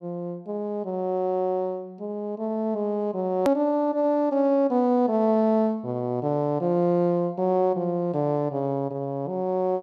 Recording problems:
click at an edit; at 3.5 s

